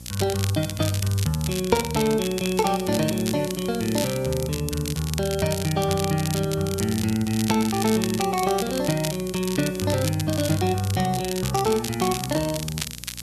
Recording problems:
hum; 60 Hz, harmonics up to 600 Hz, SNR 20 dB
hiss; SNR 22 dB
crackle; vinyl, SNR 8 dB

